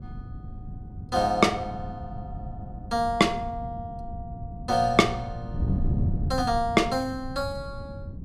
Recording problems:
wind on the microphone; below 170 Hz, SNR 9 dB

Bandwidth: 14 kHz